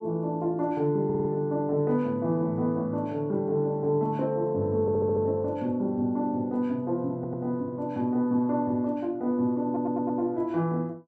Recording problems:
stutter; 4 times, first at 1 s

